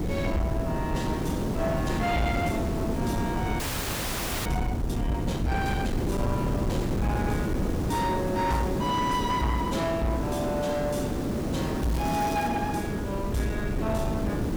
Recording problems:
distortion; soft clipping, signal-to-distortion ratio 11 dB
hiss; SNR 1 dB
rumble; below 190 Hz, SNR 3 dB
frozen audio; at 3.5 s for 1 s
crackle; at 12 s; loose cable, SNR 12 dB

